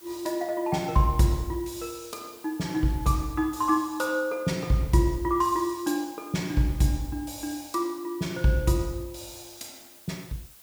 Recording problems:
background hiss; slope 0 dB per octave, SNR 21 dB

